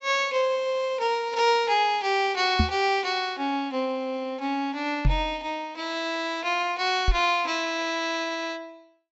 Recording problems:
treble cut off; nothing above 8 kHz
knock on the microphone; at 2.5 s, at 5 s and at 7 s; peak +6 dB vs average level

